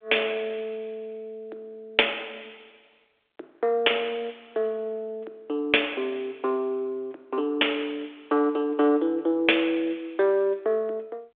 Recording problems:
telephone audio; 300 Hz to 3.6 kHz, G.726

